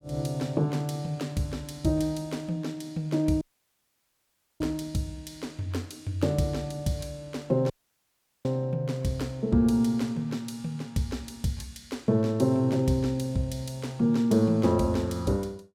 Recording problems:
audio cutting out; at 3.5 s for 1 s and at 7.5 s for 0.5 s

